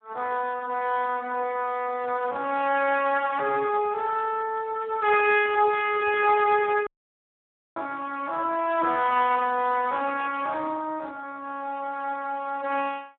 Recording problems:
phone line; 260 Hz to 3.6 kHz, Speex
audio cutting out; at 7 s for 1 s

